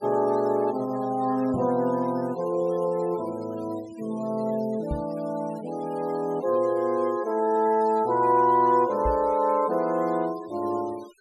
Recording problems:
noise reduction artefacts; signal-to-artefact ratio 24 dB
knock on the microphone; at 1.5 s, at 5 s and at 9 s; peak -3 dB vs average level

